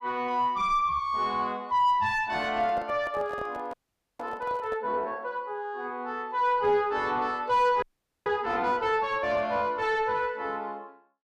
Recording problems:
distorted audio; soft clipping, signal-to-distortion ratio 9 dB
handling noise; from 2.5 to 5 s; peak -6 dB vs average level
frozen audio; at 3.5 s and at 8 s

